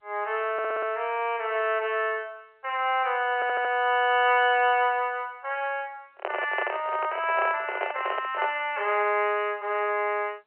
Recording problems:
phone line; 340 Hz to 3.1 kHz, G.711
stutter; at 0.5 s and at 3.5 s
handling noise; from 6 to 8.5 s; peak -1 dB vs average level

